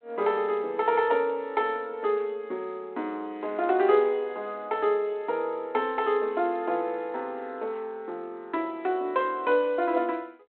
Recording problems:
telephone audio; 260 Hz to 3.6 kHz, G.726

